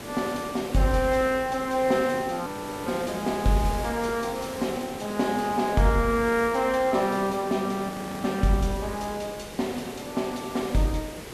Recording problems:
hiss; SNR 12 dB
frozen audio; at 2.5 s and at 8 s

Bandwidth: 13.5 kHz